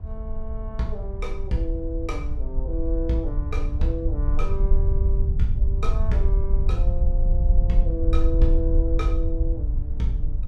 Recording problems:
rumble; below 58 Hz, SNR -6 dB
wind on the microphone; below 510 Hz, SNR 23 dB

